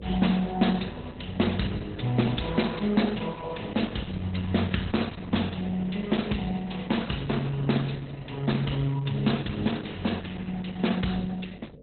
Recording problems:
codec artefacts; MP2, then Opus, log-spectral distance 6 dB, nothing above 4.1 kHz
electrical hum; 50 Hz, harmonics up to 600 Hz, SNR 15 dB

